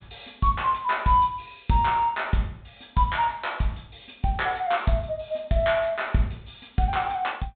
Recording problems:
treble missing; nothing above 4 kHz

